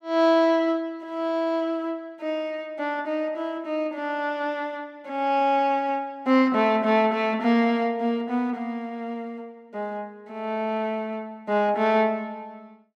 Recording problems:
none

